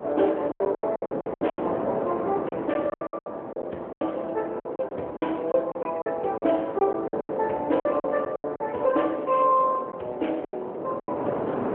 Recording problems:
phone line; 220 Hz to 3.1 kHz, AMR-NB
wind noise; below 770 Hz, SNR 8 dB
packet loss; 15% of the sound replaced, filled with silence

